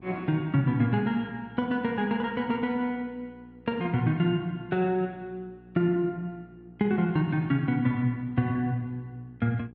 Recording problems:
electrical hum; 60 Hz, harmonics up to 900 Hz, SNR 25 dB

